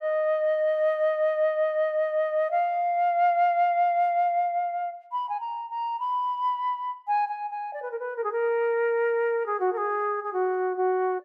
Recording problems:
none

